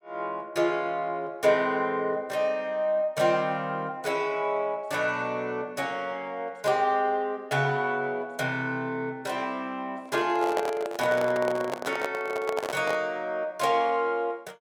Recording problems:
handling noise; from 10 to 13 s; peak +2 dB vs average level

